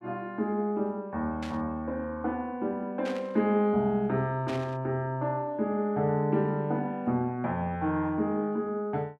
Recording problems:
static burst; at 1.5 s, at 3 s and at 4.5 s; peak -7 dB vs average level

